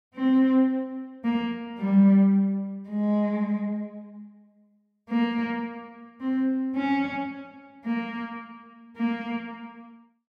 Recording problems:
none

